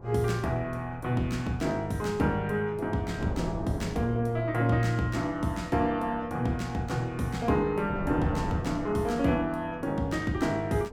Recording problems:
wind on the microphone; below 430 Hz, SNR 12 dB

